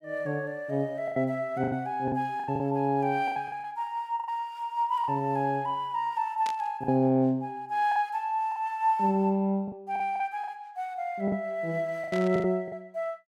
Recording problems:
packet loss; 9% of the sound replaced, filled with the last packet
static burst; at 6.5 s and at 12 s; peak -7 dB vs average level

